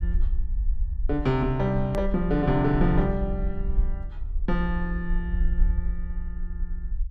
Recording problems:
low-frequency rumble; below 54 Hz, SNR 4 dB
hard cut with a click; at 2 s

